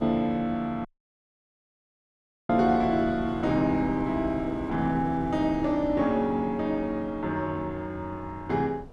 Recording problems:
wind on the microphone; below 380 Hz, SNR 15 dB
audio cutting out; at 1 s for 1.5 s

